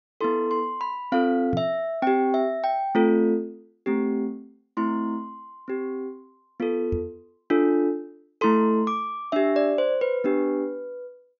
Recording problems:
treble missing; nothing above 6.8 kHz
knock on the microphone; at 1.5 s and at 7 s; peak -1 dB vs average level

